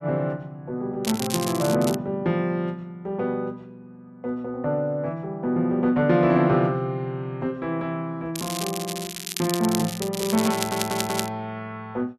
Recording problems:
crackle; at 1 s and from 8.5 to 11 s; loose cable, SNR 6 dB
audio stuttering; at 11 s

